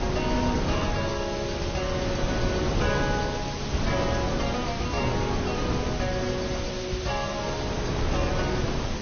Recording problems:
treble cut off; nothing above 6.3 kHz
lossy codec; AAC, log-spectral distance 9 dB
hum; 60 Hz, harmonics up to 1.1 kHz, SNR 24 dB
hiss; slope 0 dB per octave, SNR 5 dB
wind noise; below 560 Hz, SNR -1 dB

